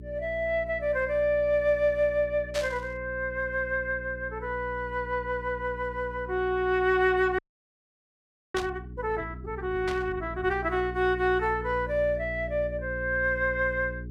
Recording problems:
hum; 60 Hz, harmonics up to 420 Hz, SNR 13 dB
static burst; at 2.5 s, at 8.5 s and at 10 s; peak -3 dB vs average level
frozen audio; at 7.5 s for 1 s

